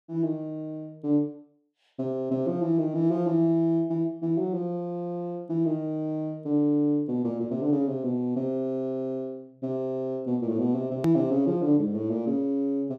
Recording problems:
click at an edit; at 11 s

